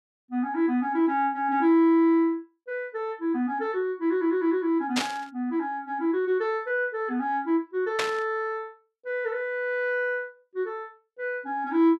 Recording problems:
static burst; at 5 s and at 8 s; peak +3 dB vs average level

